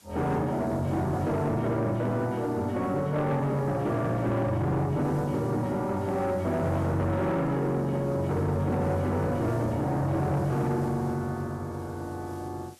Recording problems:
distorted audio; soft clipping, signal-to-distortion ratio 10 dB
background hiss; slope -1 dB per octave, SNR 27 dB

